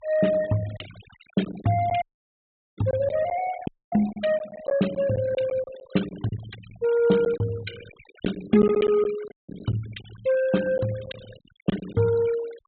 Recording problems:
treble missing; nothing above 4 kHz
denoising artefacts; signal-to-artefact ratio 18 dB
packet loss; 6% of the sound replaced, filled with silence
audio cutting out; at 2 s for 1 s, at 3.5 s and at 9.5 s

